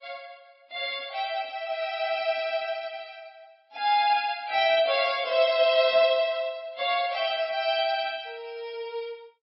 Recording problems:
lossy compression; MP3, log-spectral distance 3 dB, nothing above 5.2 kHz
static burst; at 6 s; peak -12 dB vs average level

